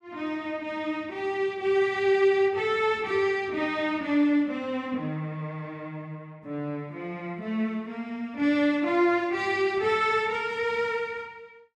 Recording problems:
none

